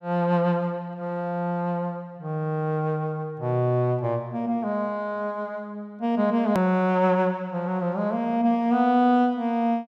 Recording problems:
edit click; at 6.5 s

